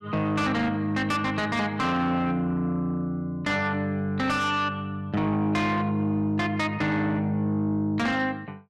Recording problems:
distortion; soft clipping, signal-to-distortion ratio 10 dB

